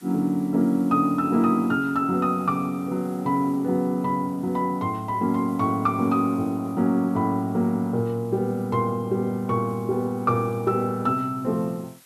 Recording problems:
hiss; slope 0 dB per octave, SNR 28 dB

